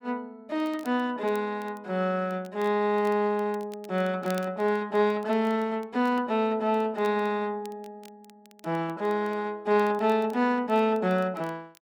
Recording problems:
crackle; vinyl, SNR 27 dB

